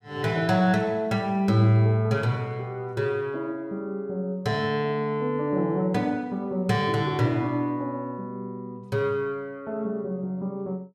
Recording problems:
none

